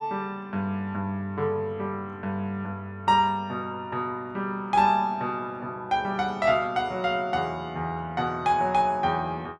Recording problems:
none

